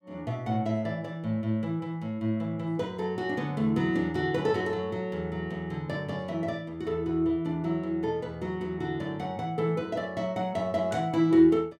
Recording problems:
none

